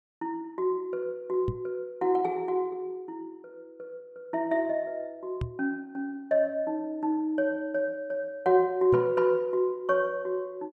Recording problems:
microphone thump; at 1.5 s, at 5.5 s and at 9 s; peak +1 dB vs average level

